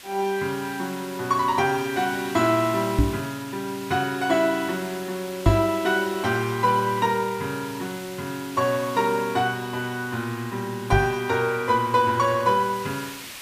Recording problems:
hiss; SNR 15 dB
knock on the microphone; at 3 s, at 5.5 s and at 11 s; peak +7 dB vs average level

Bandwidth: 15 kHz